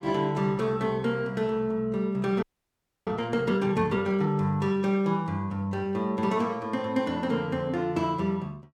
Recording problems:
audio freezing; at 2.5 s for 0.5 s

